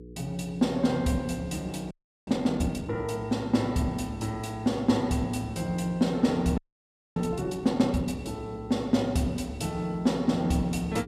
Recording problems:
electrical hum; 60 Hz, harmonics up to 480 Hz, SNR 17 dB
frozen audio; at 2 s and at 6.5 s for 0.5 s

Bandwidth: 15.5 kHz